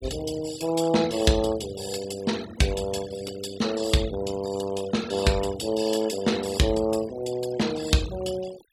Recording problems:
noise reduction artefacts; signal-to-artefact ratio 15 dB

